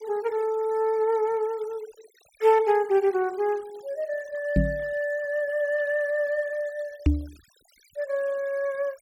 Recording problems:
noise reduction artefacts; signal-to-artefact ratio 25 dB
knock on the microphone; at 4.5 s and at 7 s; peak +8 dB vs average level

